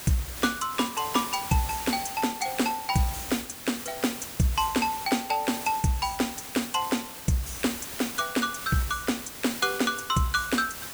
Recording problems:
hiss; slope -1 dB per octave, SNR 9 dB

